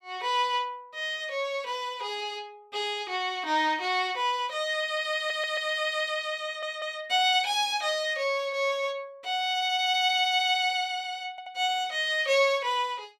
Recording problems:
audio stuttering; at 5 s, at 6.5 s and at 11 s

